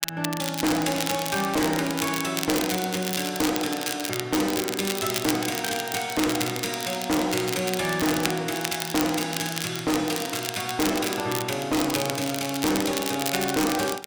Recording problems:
distorted audio; hard clipping, uneven, signal-to-distortion ratio 7 dB
crackle; vinyl, SNR 5 dB

